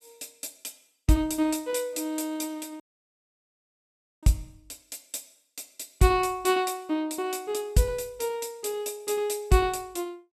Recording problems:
audio cutting out; at 3 s for 1.5 s

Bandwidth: 13.5 kHz